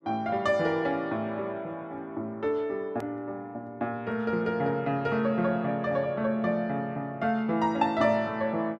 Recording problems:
click at an edit; at 3 s

